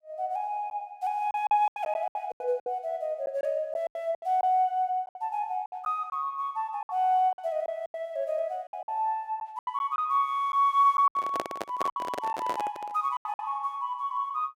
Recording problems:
lost packets; 10% of the sound replaced, filled with silence
microphone handling noise; from 11 to 13 s; peak +1 dB vs average level

